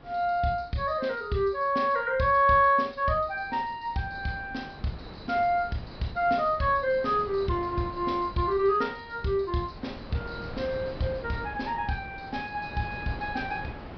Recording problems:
treble cut off; nothing above 5.5 kHz
wind on the microphone; below 750 Hz, SNR 16 dB

